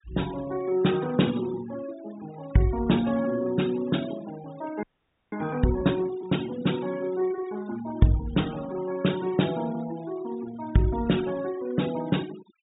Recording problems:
low-pass filter; nothing above 4 kHz
denoising artefacts; signal-to-artefact ratio 17 dB
frozen audio; at 5 s

